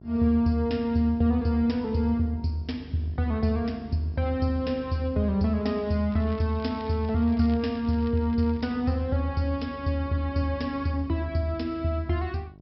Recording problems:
treble cut off; nothing above 5.4 kHz
electrical hum; 50 Hz, harmonics up to 750 Hz, SNR 20 dB
crackling; from 6 to 9 s; loose cable, SNR 26 dB

